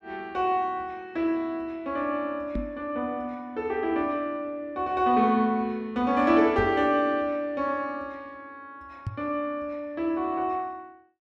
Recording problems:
microphone bump; at 2.5 s, at 6.5 s and at 9 s; peak -1 dB vs average level

